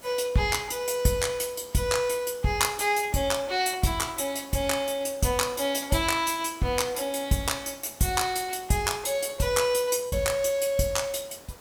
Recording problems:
hiss; slope -4 dB per octave, SNR 23 dB
lost packets; 0.4% of the sound replaced, filled with repeated pitch periods

